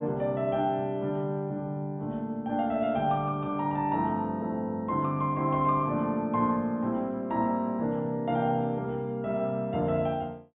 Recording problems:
treble cut off; nothing above 4 kHz

